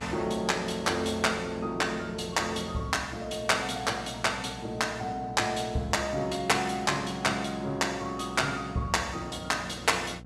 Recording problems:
electrical hum; 60 Hz, harmonics up to 1 kHz, SNR 19 dB

